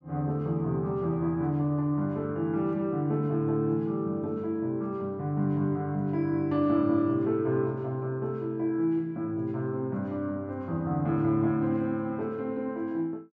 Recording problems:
none

